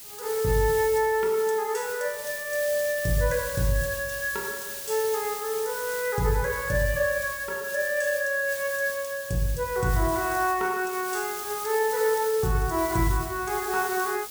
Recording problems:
background hiss; SNR 9 dB

